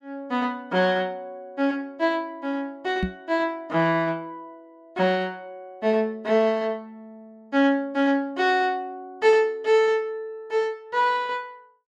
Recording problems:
microphone thump; at 3 s; peak +1 dB vs average level

